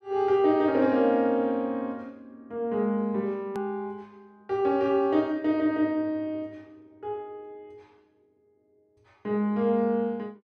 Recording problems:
hard cut with a click; at 3.5 s

